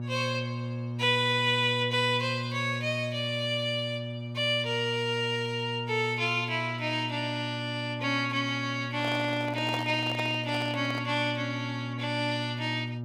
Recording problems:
hum; 60 Hz, harmonics up to 600 Hz, SNR 8 dB
handling noise; from 9 to 11 s; peak -2 dB vs average level

